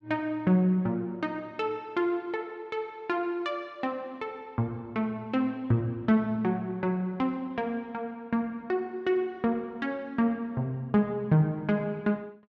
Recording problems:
none

